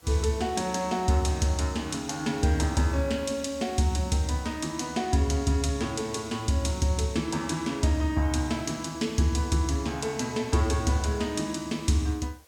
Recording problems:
hiss; SNR 29 dB

